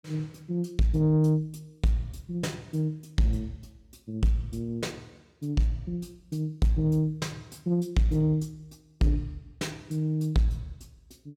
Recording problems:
distortion; soft clipping, signal-to-distortion ratio 11 dB

